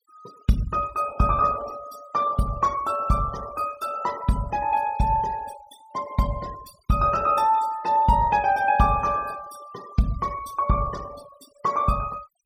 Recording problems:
denoising artefacts; signal-to-artefact ratio 20 dB

